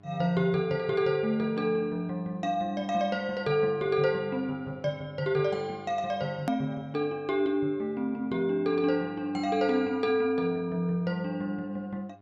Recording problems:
hum; 50 Hz, harmonics up to 1.8 kHz, SNR 26 dB
click at an edit; at 6.5 s

